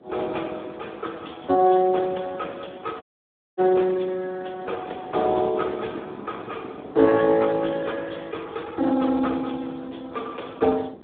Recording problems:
telephone audio; 220 Hz to 3.7 kHz, Speex
wind noise; below 490 Hz, SNR 20 dB
dropout; at 3 s for 0.5 s

